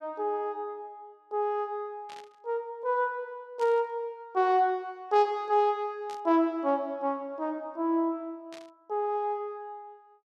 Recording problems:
burst of static; 4 times, first at 2 s; peak -13 dB vs average level

